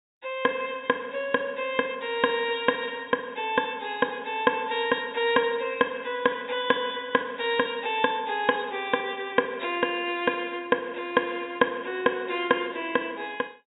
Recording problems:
low-pass filter; nothing above 4 kHz

